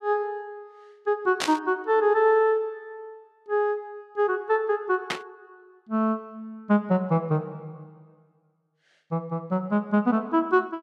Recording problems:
static burst; at 1.5 s and at 5 s; peak +1 dB vs average level

